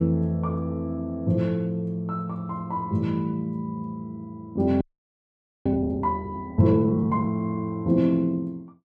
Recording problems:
frozen audio; at 5 s for 1 s

